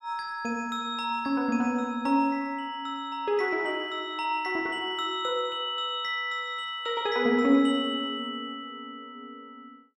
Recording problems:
none

